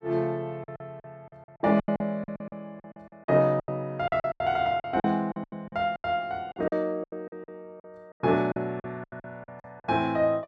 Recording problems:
packet loss; 18% of the sound replaced, filled with silence

